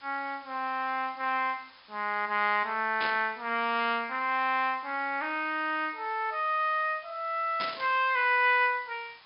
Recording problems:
treble cut off; nothing above 5.5 kHz
background hiss; SNR 25 dB
burst of static; at 3 s and at 7.5 s; peak -3 dB vs average level

